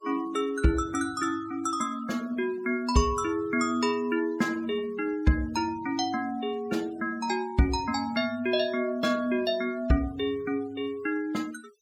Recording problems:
noise reduction artefacts; signal-to-artefact ratio 23 dB

